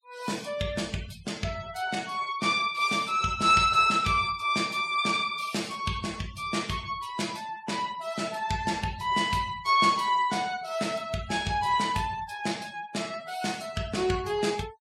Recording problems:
denoising artefacts; signal-to-artefact ratio 20 dB

